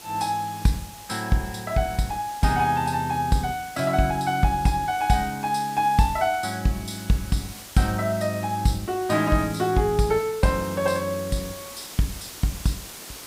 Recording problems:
hiss; slope -1 dB per octave, SNR 15 dB

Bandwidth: 15.5 kHz